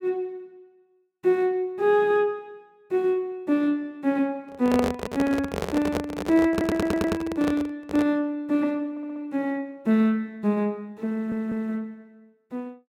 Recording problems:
microphone handling noise; from 4.5 to 8 s; peak +2 dB vs average level
stutter; at 6.5 s, at 9 s and at 11 s

